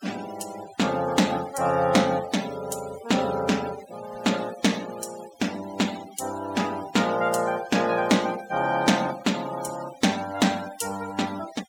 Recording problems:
noise reduction artefacts; signal-to-artefact ratio 16 dB

